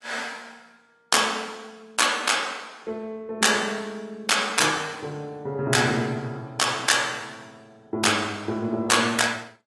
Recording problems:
lossy compression; AAC, log-spectral distance 4 dB, nothing above 11.6 kHz

